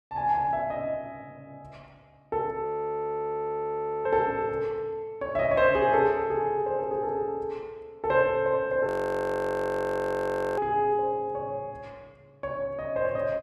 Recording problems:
audio freezing; at 2.5 s for 1.5 s and at 9 s for 1.5 s

